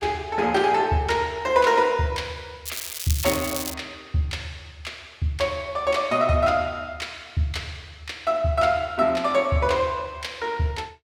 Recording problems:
crackling; from 2.5 to 3.5 s; loose cable, SNR 6 dB

